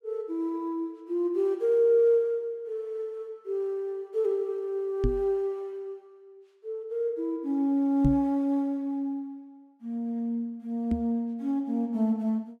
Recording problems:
knock on the microphone; at 5 s, at 8 s and at 11 s; peak +5 dB vs average level

